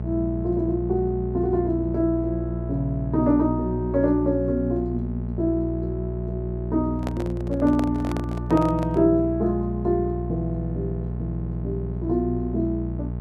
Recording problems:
mains hum; 60 Hz, harmonics up to 660 Hz, SNR 5 dB
microphone handling noise; from 7 to 9 s; peak -3 dB vs average level

